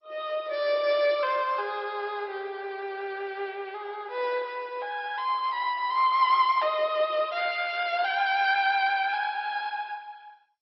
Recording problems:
codec artefacts; MP2, log-spectral distance 3 dB, nothing above 5.3 kHz

